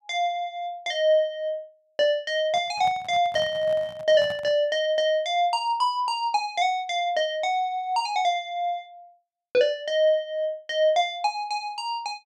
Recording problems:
handling noise; from 2.5 to 4.5 s; peak -11 dB vs average level

